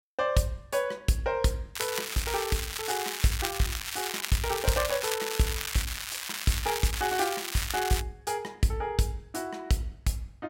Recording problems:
crackling; from 2 to 8 s; loose cable, SNR 3 dB

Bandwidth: 16 kHz